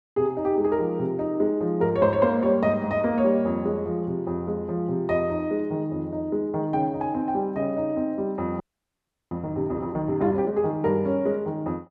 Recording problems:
frozen audio; at 8.5 s for 0.5 s

